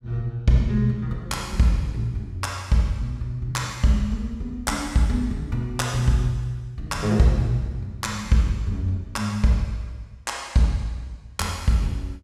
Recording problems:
none

